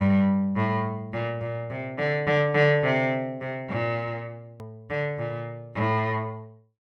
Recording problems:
hard cut with a click; at 4.5 s

